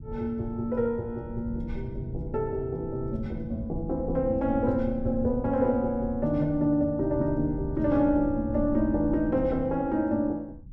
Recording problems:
low-frequency rumble; below 120 Hz, SNR 11 dB

